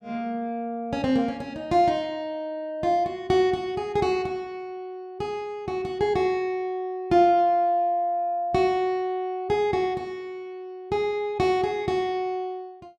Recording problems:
none

